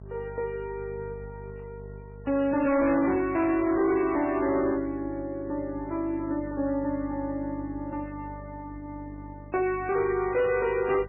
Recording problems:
codec artefacts; MP3, log-spectral distance 2 dB, nothing above 2.4 kHz
distorted audio; hard clipping, signal-to-distortion ratio 10 dB
mains hum; 50 Hz, harmonics up to 850 Hz, SNR 17 dB

